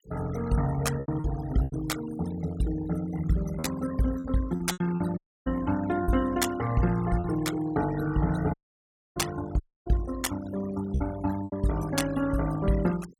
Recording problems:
denoising artefacts; signal-to-artefact ratio 14 dB
packet loss; 6% of the sound replaced, filled with repeated pitch periods
audio cutting out; at 5 s, at 8.5 s for 0.5 s and at 9.5 s

